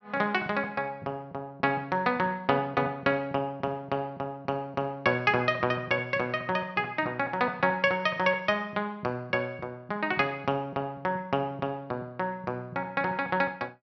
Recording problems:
treble missing; nothing above 6 kHz

